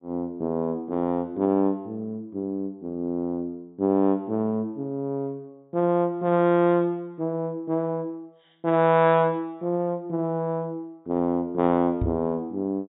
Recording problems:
treble missing; nothing above 4 kHz
microphone thump; at 12 s; peak +1 dB vs average level

